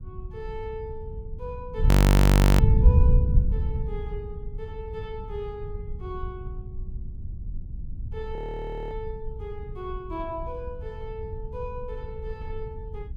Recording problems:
wind noise; below 140 Hz, SNR -14 dB
frozen audio; at 2 s for 0.5 s and at 8.5 s for 0.5 s

